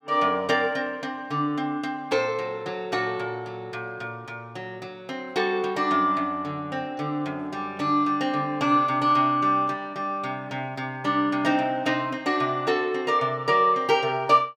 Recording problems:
none

